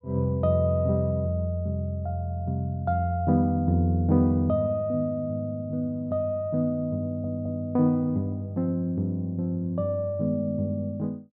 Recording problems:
stutter; at 7 s

